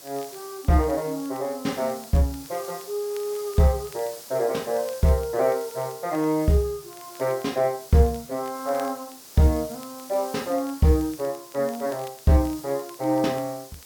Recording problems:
hiss; SNR 17 dB
crackle; vinyl, SNR 28 dB

